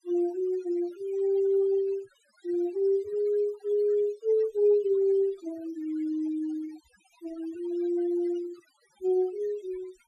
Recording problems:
denoising artefacts; signal-to-artefact ratio 24 dB

